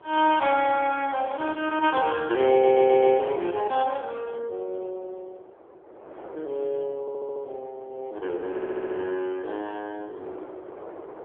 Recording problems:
telephone audio; 320 Hz to 3.3 kHz, AMR-NB
wind on the microphone; below 750 Hz, SNR 21 dB
audio stuttering; at 2.5 s, at 7 s and at 8.5 s

